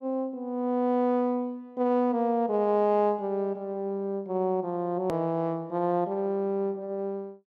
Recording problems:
click at an edit; at 5 s

